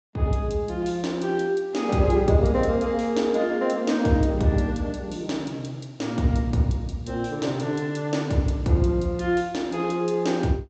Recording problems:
treble cut off; nothing above 8 kHz

